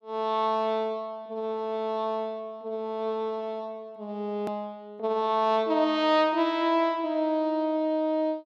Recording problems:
edit click; at 4.5 s

